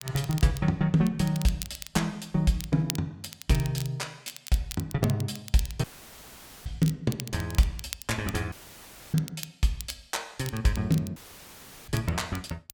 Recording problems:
crackling; vinyl, SNR 13 dB
audio cutting out; at 6 s for 1 s, at 8.5 s for 0.5 s and at 11 s for 0.5 s; filled with static

